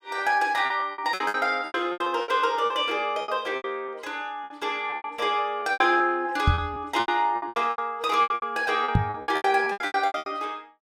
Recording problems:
lost packets; 19% of the sound replaced, filled with repeated pitch periods
microphone thump; at 6.5 s and at 9 s; peak +7 dB vs average level

